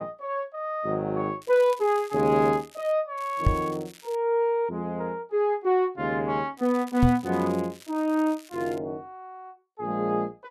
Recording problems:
crackling; from 1.5 to 3 s, at 3 s and from 6.5 to 9 s; loose cable, SNR 23 dB
knock on the microphone; at 3.5 s and at 7 s; peak +7 dB vs average level

